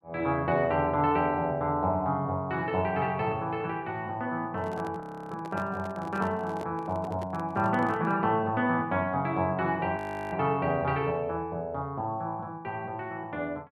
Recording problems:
handling noise; from 4.5 to 8 s; peak -8 dB vs average level
audio freezing; at 5 s and at 10 s

